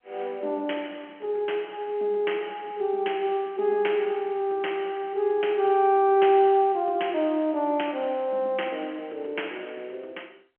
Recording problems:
telephone audio; 280 Hz to 3.2 kHz, G.711

